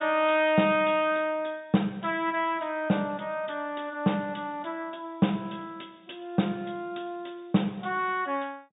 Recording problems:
treble cut off; nothing above 4 kHz

